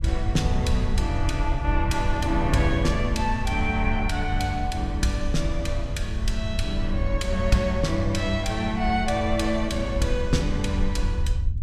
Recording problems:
rumble; below 80 Hz, SNR 3 dB

